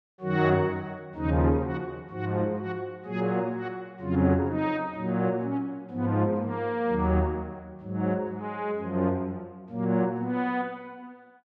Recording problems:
none

